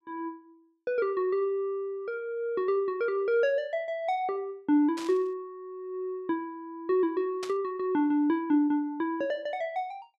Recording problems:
static burst; at 5 s and at 7.5 s; peak -6 dB vs average level

